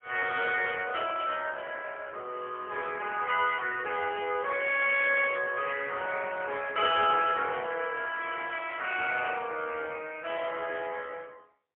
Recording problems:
phone line; 370 Hz to 3.3 kHz, AMR-NB, then MP3

